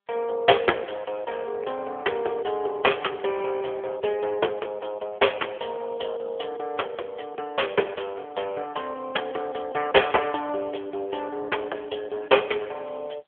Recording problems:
phone line; 340 Hz to 3.4 kHz, AMR-NB

